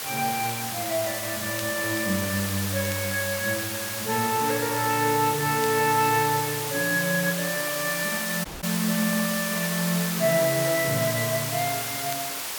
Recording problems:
background hiss; slope 0 dB per octave, SNR 3 dB
crackling; vinyl, SNR 22 dB
audio cutting out; at 8.5 s

